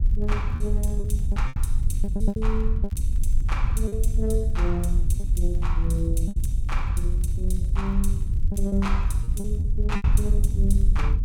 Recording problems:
low-frequency rumble; below 74 Hz, SNR 6 dB
wind noise; below 70 Hz, SNR -7 dB
crackling; vinyl, SNR 29 dB
lost packets; 8% of the sound replaced, filled with repeated pitch periods

